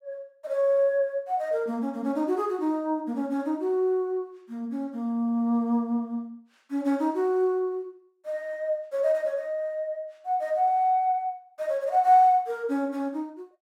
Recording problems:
none

